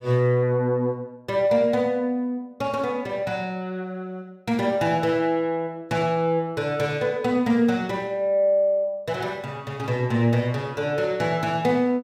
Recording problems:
none

